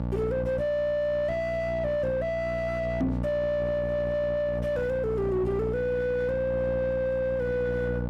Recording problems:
distorted audio; soft clipping, signal-to-distortion ratio 10 dB
hum; 60 Hz, harmonics up to 1.1 kHz, SNR 4 dB
microphone thump; at 3 s; peak +3 dB vs average level

